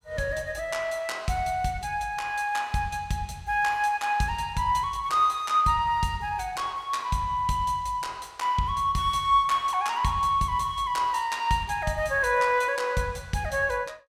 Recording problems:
none

